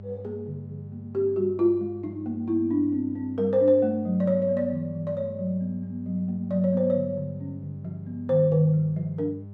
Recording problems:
hum; 50 Hz, harmonics up to 600 Hz, SNR 15 dB

